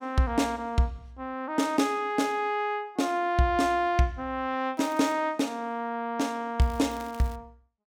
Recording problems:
crackling; at 5 s and at 6.5 s; loose cable, SNR 23 dB

